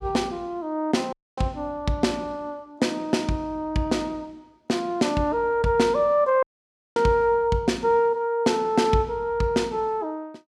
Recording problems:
audio cutting out; at 1 s and at 6.5 s for 0.5 s

